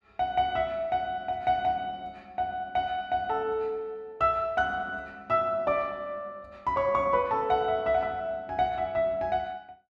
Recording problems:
none

